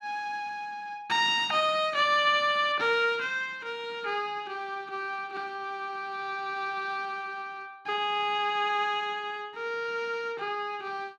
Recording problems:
none

